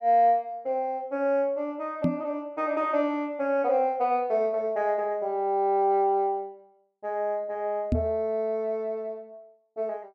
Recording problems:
knock on the microphone; at 2 s and at 8 s; peak +5 dB vs average level

